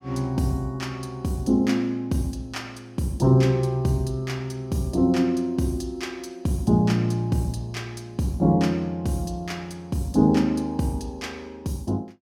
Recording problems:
none

